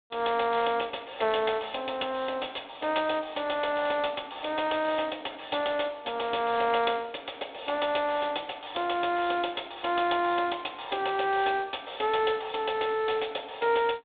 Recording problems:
phone line; 280 Hz to 3.6 kHz, G.726

